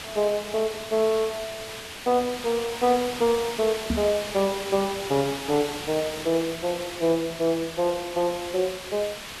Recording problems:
background hiss; SNR 9 dB
microphone thump; at 4 s; peak +3 dB vs average level

